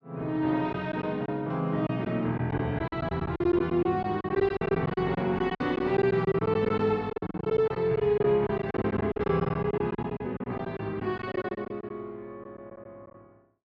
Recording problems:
lost packets; 14% of the sound replaced, filled with silence

